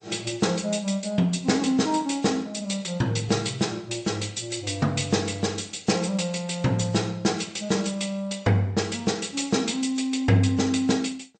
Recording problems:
lossy compression; MP3, then MP2, log-spectral distance 5 dB, nothing above 8.5 kHz

